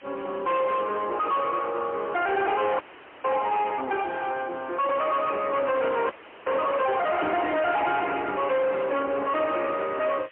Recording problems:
telephone audio; 300 Hz to 3.2 kHz, AMR-NB, then MP3
distorted audio; soft clipping, signal-to-distortion ratio 6 dB
background hiss; SNR 26 dB
frozen audio; at 3 s and at 6 s

